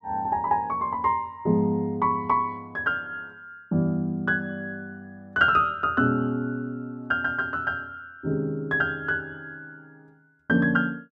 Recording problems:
none

